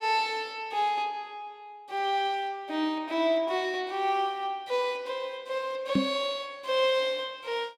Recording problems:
microphone bump; at 6 s; peak +7 dB vs average level

